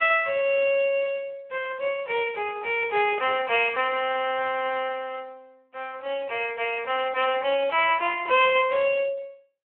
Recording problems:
phone line; 340 Hz to 3.2 kHz, Speex

